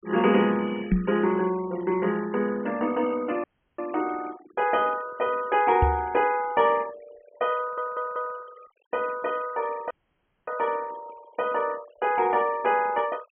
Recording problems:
treble cut off; nothing above 3.3 kHz
denoising artefacts; signal-to-artefact ratio 21 dB
microphone thump; at 1 s and at 6 s; peak +7 dB vs average level
audio cutting out; at 3.5 s and at 10 s for 0.5 s
audio stuttering; at 7.5 s

